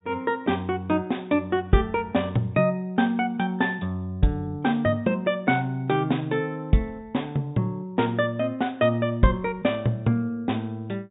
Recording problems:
treble cut off; nothing above 4 kHz

